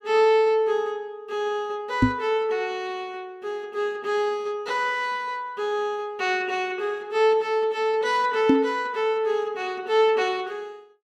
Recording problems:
knock on the microphone; at 2 s and at 8.5 s; peak +9 dB vs average level

